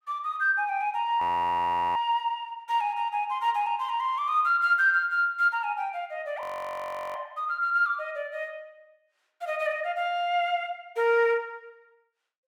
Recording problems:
audio freezing; at 1 s for 1 s and at 6.5 s for 0.5 s

